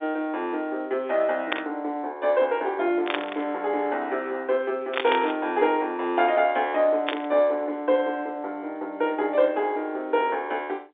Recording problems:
phone line; 260 Hz to 3.7 kHz, G.711
burst of static; 4 times, first at 1.5 s; peak +3 dB vs average level

